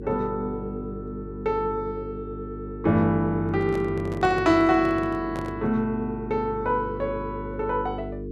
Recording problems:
electrical hum; 50 Hz, harmonics up to 450 Hz, SNR 10 dB
handling noise; from 3.5 to 5.5 s; peak -6 dB vs average level

